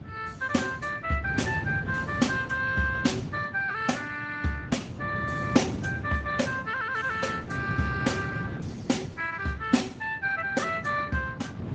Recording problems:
lossy compression; Speex, then Opus, log-spectral distance 4 dB
wind on the microphone; below 270 Hz, SNR 7 dB

